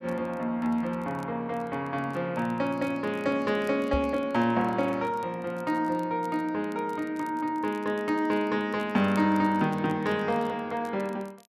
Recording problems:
crackling; vinyl, SNR 29 dB
knock on the microphone; at 4 s; peak 0 dB vs average level

